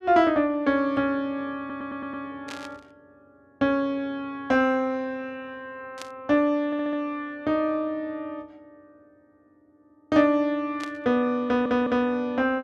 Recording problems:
audio stuttering; at 1.5 s, at 6.5 s and at 11 s
static burst; at 2.5 s, at 6 s and at 11 s; peak -9 dB vs average level

